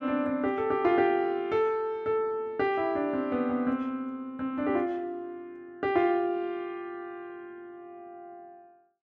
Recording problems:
none

